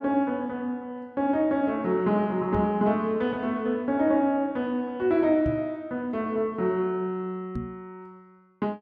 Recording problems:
knock on the microphone; at 2.5 s, at 5.5 s and at 7.5 s; peak -2 dB vs average level

